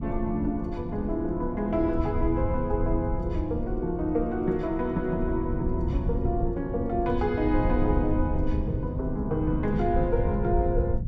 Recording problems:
rumble; below 100 Hz, SNR 4 dB

